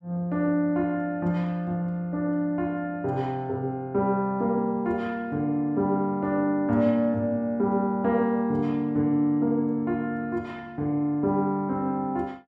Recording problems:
none

